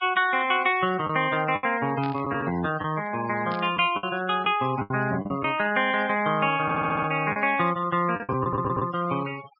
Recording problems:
treble cut off; nothing above 5.5 kHz
noise reduction artefacts; signal-to-artefact ratio 18 dB
lost packets; 6% of the sound replaced, filled with the last packet
burst of static; at 2 s and at 3.5 s; peak -11 dB vs average level
stutter; at 6.5 s and at 8.5 s

